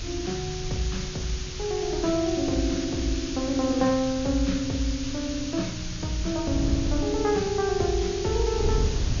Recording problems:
low-pass filter; nothing above 6.9 kHz
hiss; slope +5 dB per octave, SNR 9 dB
wind on the microphone; below 120 Hz, SNR 8 dB

